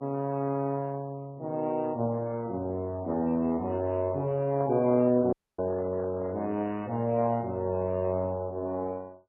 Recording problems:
lossy compression; MP3, then Vorbis, log-spectral distance 2 dB, nothing above 2.7 kHz
handling noise; from 4.5 to 6.5 s; peak -7 dB vs average level
audio cutting out; at 5.5 s

